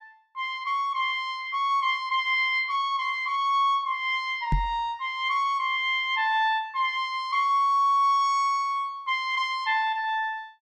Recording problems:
microphone thump; at 4.5 s; peak +2 dB vs average level

